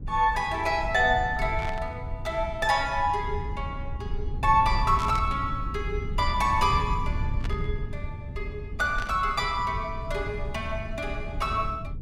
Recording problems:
low-frequency rumble; below 100 Hz, SNR 7 dB
static burst; 4 times, first at 1.5 s; peak -8 dB vs average level

